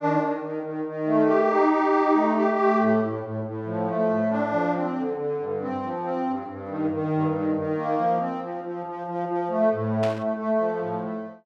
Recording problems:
burst of static; at 10 s; peak -6 dB vs average level

